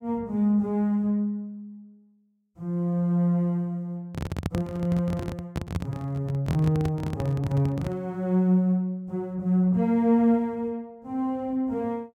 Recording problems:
microphone handling noise; from 4 to 8 s; peak +1 dB vs average level

